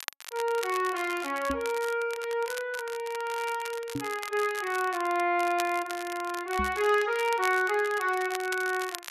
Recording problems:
crackle; vinyl, SNR 13 dB
knock on the microphone; at 1.5 s, at 4 s and at 6.5 s; peak -1 dB vs average level

